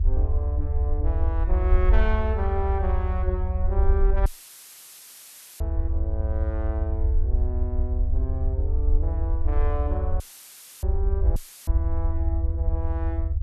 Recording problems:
low-frequency rumble; below 78 Hz, SNR -8 dB
audio cutting out; at 4.5 s for 1.5 s, at 10 s for 0.5 s and at 11 s; filled with static

